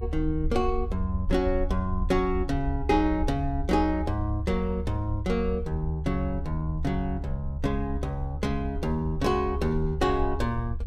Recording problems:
low-frequency rumble; below 72 Hz, SNR 5 dB

